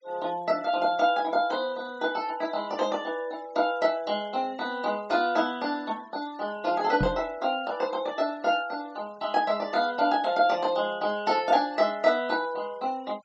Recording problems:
treble missing; nothing above 8 kHz
denoising artefacts; signal-to-artefact ratio 24 dB
knock on the microphone; at 7 s; peak +2 dB vs average level

